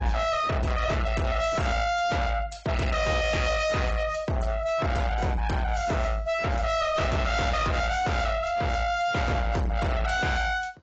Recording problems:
codec artefacts; AAC, log-spectral distance 3 dB, nothing above 7.3 kHz
distortion; soft clipping, signal-to-distortion ratio 6 dB

